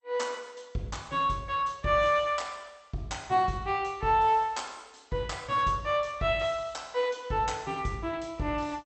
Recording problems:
codec artefacts; MP2, log-spectral distance 3 dB, nothing above 8.2 kHz

